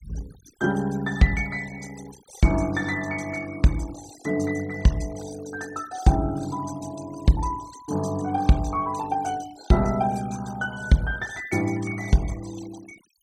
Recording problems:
noise reduction artefacts; signal-to-artefact ratio 18 dB

